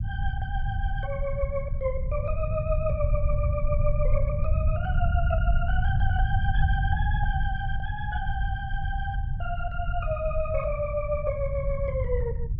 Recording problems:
rumble; below 94 Hz, SNR -3 dB

